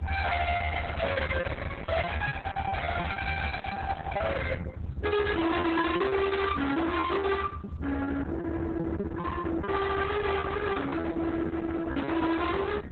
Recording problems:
lossy compression; Opus, then Opus, log-spectral distance 4 dB, nothing above 4 kHz
distorted audio; soft clipping, signal-to-distortion ratio 6 dB
low-frequency rumble; below 780 Hz, SNR 7 dB
packet loss; 16% of the sound replaced, filled with repeated pitch periods

